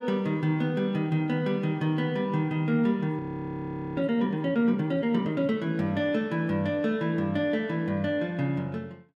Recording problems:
frozen audio; at 3 s for 1 s

